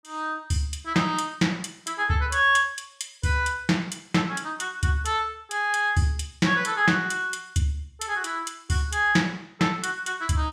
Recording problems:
none

